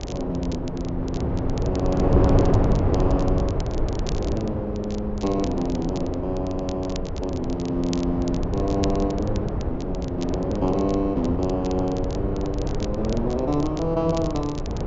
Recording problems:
low-pass filter; nothing above 7.3 kHz
wind on the microphone; below 380 Hz, SNR 0 dB
crackling; vinyl, SNR 17 dB

